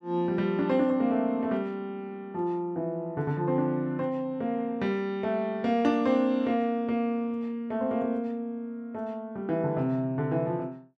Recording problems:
none

